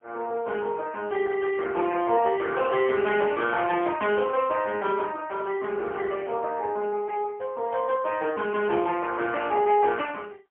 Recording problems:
telephone audio; 300 Hz to 3.2 kHz, AMR-NB, then MP3

